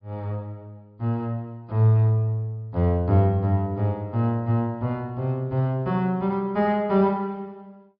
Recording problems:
low-pass filter; nothing above 5.5 kHz

